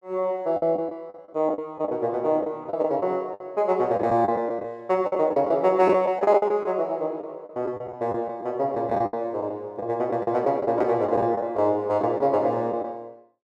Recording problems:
packet loss; 11% of the sound replaced, filled with the last packet

